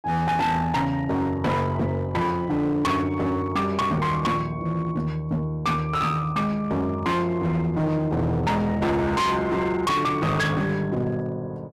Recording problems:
distortion; hard clipping, uneven, signal-to-distortion ratio 7 dB

